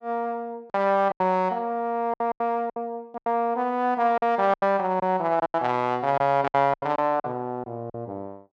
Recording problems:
lost packets; 11% of the sound replaced, filled with silence

